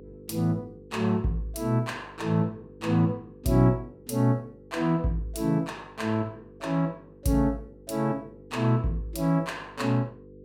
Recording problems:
hum; 50 Hz, harmonics up to 500 Hz, SNR 22 dB

